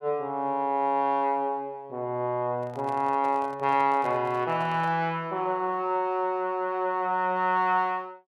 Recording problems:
microphone handling noise; from 2.5 to 5 s; peak -11 dB vs average level

